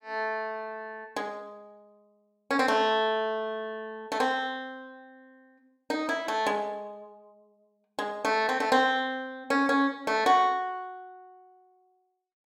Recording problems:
none

